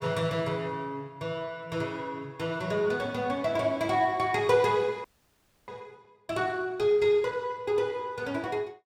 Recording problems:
frozen audio; at 5 s for 0.5 s

